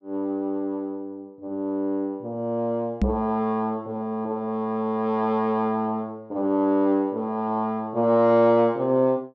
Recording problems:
microphone bump; at 3 s; peak +5 dB vs average level

